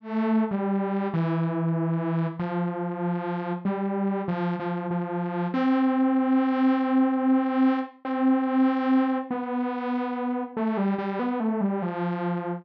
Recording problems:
none

